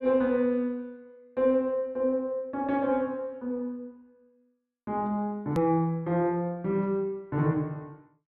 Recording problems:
click at an edit; at 5.5 s

